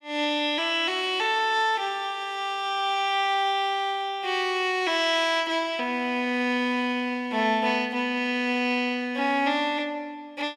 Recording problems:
none

